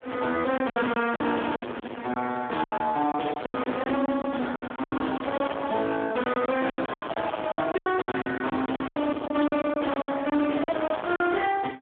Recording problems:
telephone audio; 220 Hz to 3.5 kHz, Speex
distortion; soft clipping, signal-to-distortion ratio 6 dB
lost packets; 15% of the sound replaced, filled with silence
crackling; from 7 to 8 s; loose cable, SNR 30 dB

